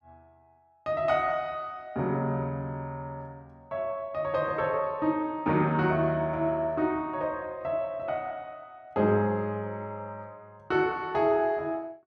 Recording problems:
none

